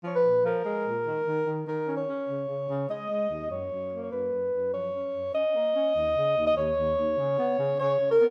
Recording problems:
none

